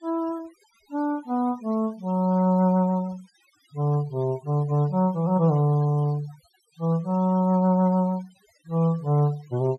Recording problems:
denoising artefacts; signal-to-artefact ratio 26 dB

